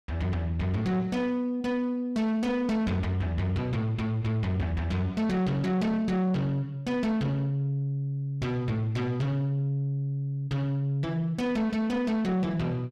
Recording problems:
distorted audio; soft clipping, signal-to-distortion ratio 11 dB

